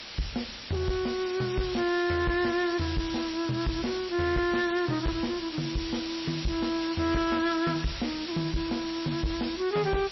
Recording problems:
lossy compression; MP3, then MP3, log-spectral distance 12 dB, nothing above 5.7 kHz
distortion; soft clipping, signal-to-distortion ratio 10 dB
hiss; slope +1 dB per octave, SNR 8 dB

